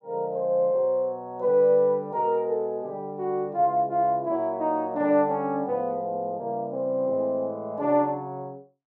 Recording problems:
none

